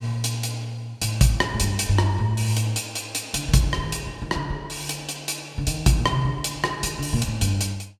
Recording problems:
none

